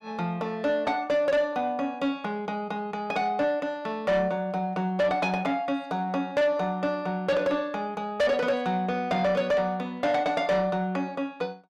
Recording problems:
distortion; soft clipping, signal-to-distortion ratio 10 dB

